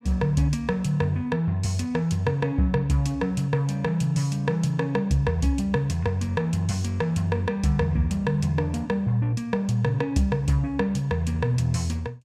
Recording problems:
none

